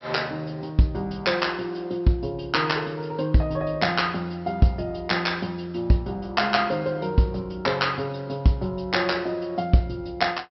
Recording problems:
treble cut off; nothing above 5.6 kHz

